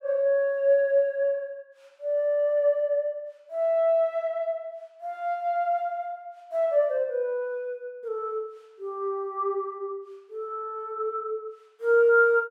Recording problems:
none

